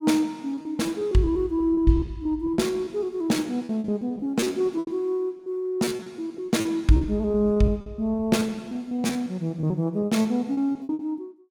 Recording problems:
lost packets; 16% of the sound replaced, filled with repeated pitch periods

